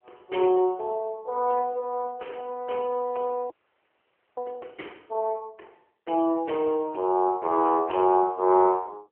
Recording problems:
telephone audio; 280 Hz to 3.2 kHz, AMR-NB
audio freezing; at 3.5 s for 1 s

